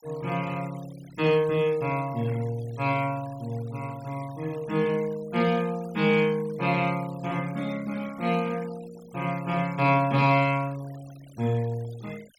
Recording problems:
noise reduction artefacts; signal-to-artefact ratio 22 dB

